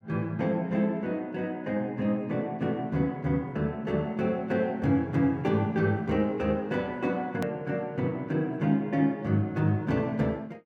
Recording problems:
edit click; at 7.5 s

